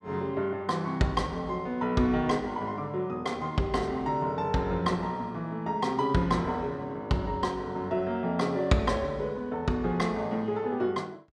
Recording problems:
none

